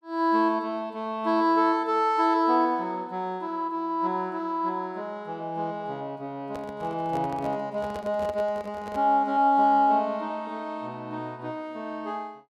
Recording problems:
handling noise; from 6.5 to 9 s; peak -8 dB vs average level

